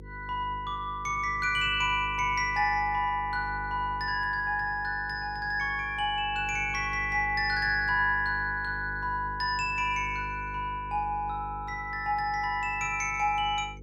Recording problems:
hum; 50 Hz, harmonics up to 500 Hz, SNR 15 dB

